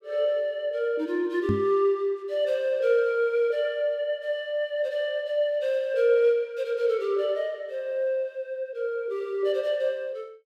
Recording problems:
microphone bump; at 1.5 s; peak +3 dB vs average level

